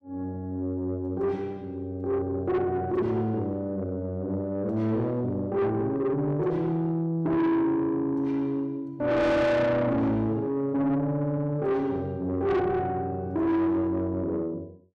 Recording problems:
distortion; soft clipping, signal-to-distortion ratio 7 dB

